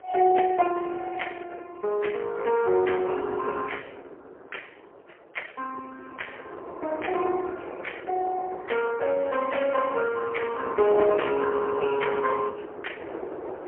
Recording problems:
phone line; 300 Hz to 3.1 kHz, AMR-NB, then MP3
wind noise; below 720 Hz, SNR 16 dB

